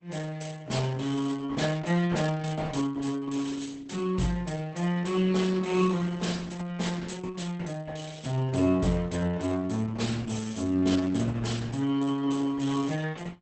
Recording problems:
lossy compression; Opus, log-spectral distance 5 dB, nothing above 8.2 kHz

